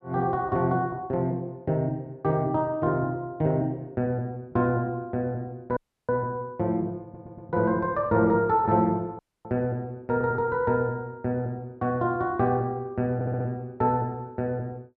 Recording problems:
dropout; at 6 s and at 9 s
audio stuttering; at 7 s and at 13 s

